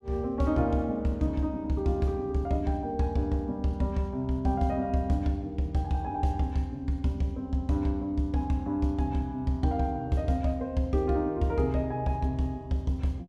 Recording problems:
none

